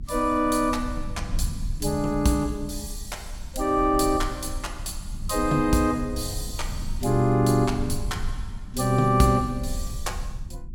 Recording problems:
rumble; below 80 Hz, SNR 11 dB

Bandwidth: 17 kHz